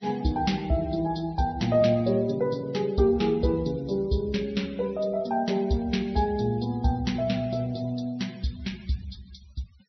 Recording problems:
treble cut off; nothing above 5.9 kHz
noise reduction artefacts; signal-to-artefact ratio 26 dB

